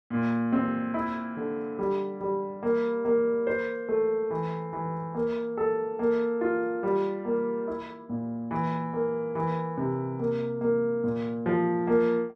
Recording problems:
none

